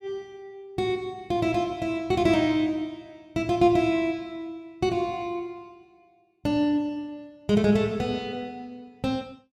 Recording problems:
none

